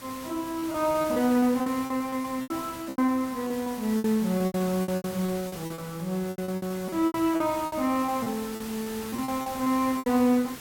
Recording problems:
background hiss; slope -2 dB per octave, SNR 13 dB
lost packets; 16% of the sound replaced, filled with repeated pitch periods

